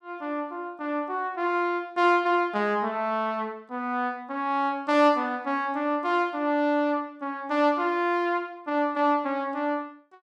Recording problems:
none

